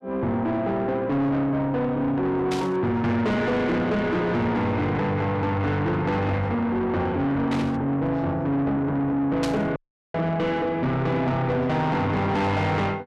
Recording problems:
distortion; soft clipping, signal-to-distortion ratio 8 dB
burst of static; at 2.5 s, at 7.5 s and at 9.5 s; peak -3 dB vs average level
dropout; at 10 s

